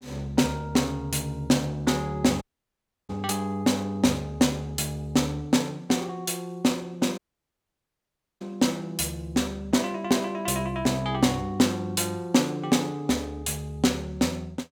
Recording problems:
audio cutting out; at 2.5 s for 0.5 s and at 7 s for 1 s

